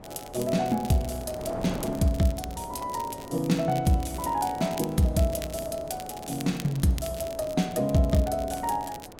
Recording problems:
wind on the microphone; below 670 Hz, SNR 16 dB
crackle; vinyl, SNR 17 dB

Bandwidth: 16.5 kHz